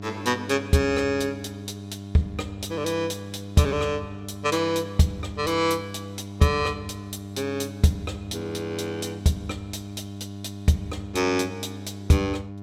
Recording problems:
electrical hum; 50 Hz, harmonics up to 1.1 kHz, SNR 12 dB

